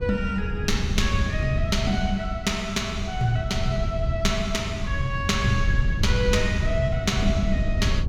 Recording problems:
wind noise; below 100 Hz, SNR 2 dB

